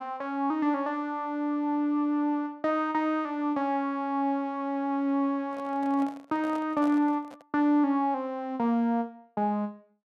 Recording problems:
microphone handling noise; from 5.5 to 7.5 s; peak -9 dB vs average level

